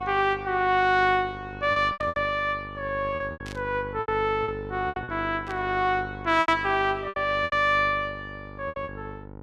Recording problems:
hum; 50 Hz, harmonics up to 1.4 kHz, SNR 15 dB
packet loss; 10% of the sound replaced, filled with repeated pitch periods
static burst; at 2 s, at 3.5 s and at 5.5 s; peak -12 dB vs average level

